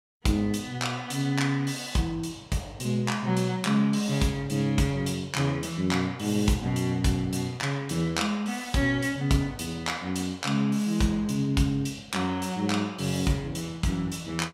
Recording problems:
none

